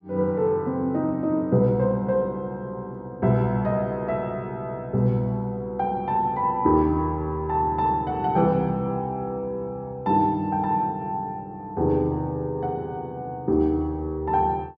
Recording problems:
none

